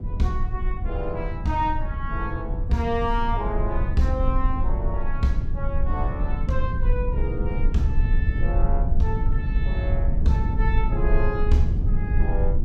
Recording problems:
rumble; below 68 Hz, SNR -2 dB

